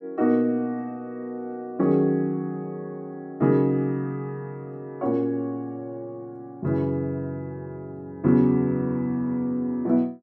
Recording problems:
none

